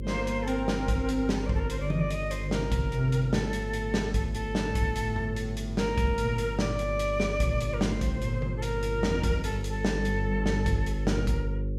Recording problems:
hum; 50 Hz, harmonics up to 550 Hz, SNR 5 dB

